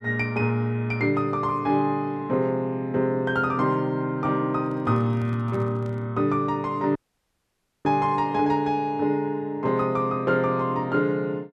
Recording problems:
handling noise; from 4.5 to 6 s; peak -8 dB vs average level
dropout; at 7 s for 1 s

